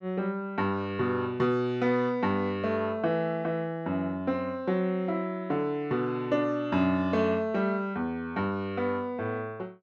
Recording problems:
none

